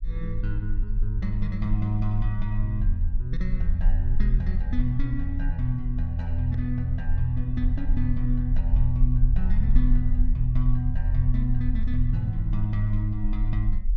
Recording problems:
low-frequency rumble; below 42 Hz, strongest tone 24 Hz, SNR 1 dB

